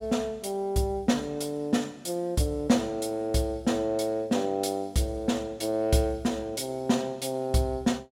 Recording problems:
none

